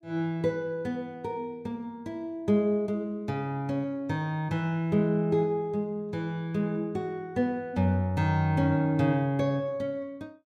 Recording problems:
none

